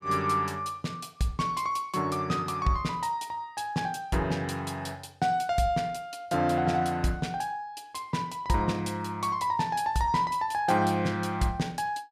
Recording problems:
none

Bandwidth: 15.5 kHz